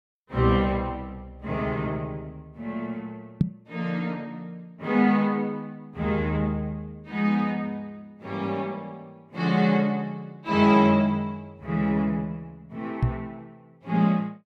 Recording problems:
microphone thump; at 3.5 s and at 13 s; peak +8 dB vs average level

